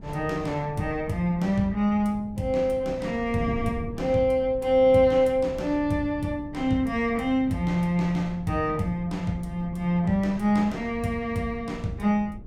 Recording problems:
wind noise; below 190 Hz, SNR 15 dB

